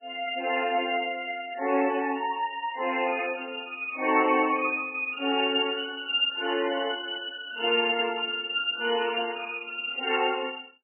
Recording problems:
lossy compression; MP3, then Vorbis, log-spectral distance 5 dB, nothing above 2.5 kHz

